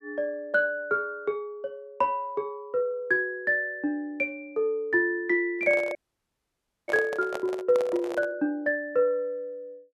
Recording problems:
microphone handling noise; from 5.5 to 8.5 s; peak -3 dB vs average level
frozen audio; at 6 s for 1 s

